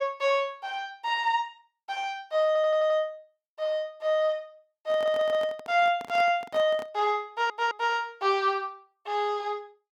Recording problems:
stutter; at 2.5 s, at 5 s and at 7.5 s
microphone handling noise; from 5 to 7 s; peak -10 dB vs average level

